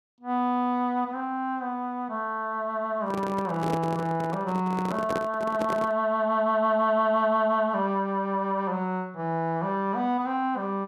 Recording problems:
handling noise; from 3 to 6 s; peak -1 dB vs average level

